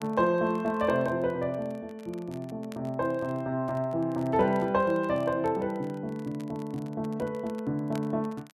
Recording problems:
crackle; vinyl, SNR 27 dB

